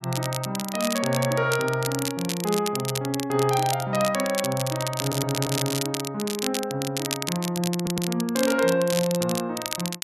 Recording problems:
crackling; vinyl, SNR 5 dB
audio stuttering; at 5 s and at 8 s

